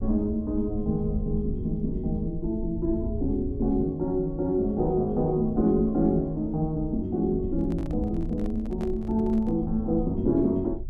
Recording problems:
rumble; below 78 Hz, SNR 10 dB
microphone handling noise; from 7.5 to 9.5 s; peak -11 dB vs average level

